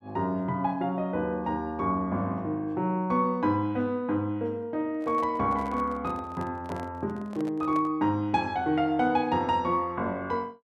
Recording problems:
handling noise; from 5 to 8 s; peak -9 dB vs average level

